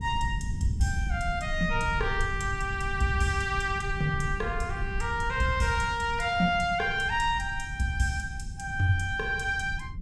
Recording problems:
rumble; below 100 Hz, SNR 8 dB

